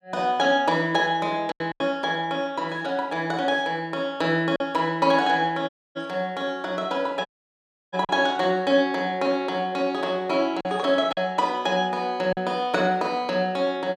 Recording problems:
packet loss; 3% of the sound replaced, filled with silence
audio cutting out; at 5.5 s and at 7.5 s for 0.5 s

